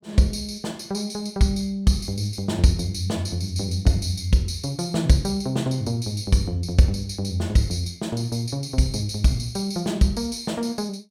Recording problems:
none

